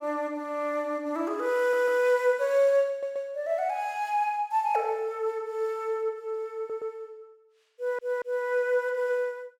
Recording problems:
stutter; 4 times, first at 1.5 s

